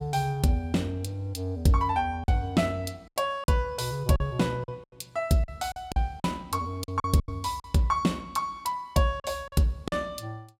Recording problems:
packet loss; 7% of the sound replaced, filled with silence

